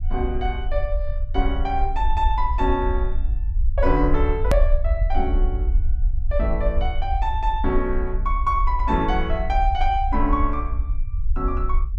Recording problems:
low-frequency rumble; below 56 Hz, SNR 0 dB
hard cut with a click; at 4.5 s

